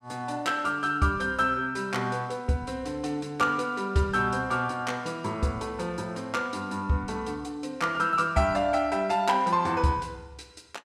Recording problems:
none

